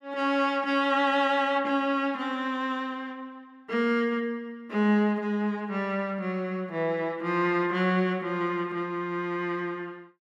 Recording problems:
none

